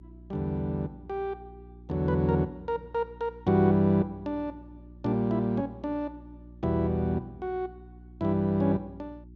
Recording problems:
hum; 60 Hz, harmonics up to 360 Hz, SNR 21 dB

